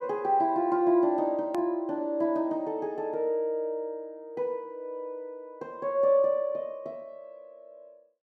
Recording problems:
hard cut with a click; at 1.5 s

